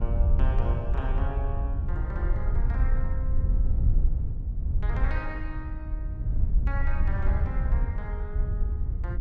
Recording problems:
wind noise; below 72 Hz, SNR -11 dB

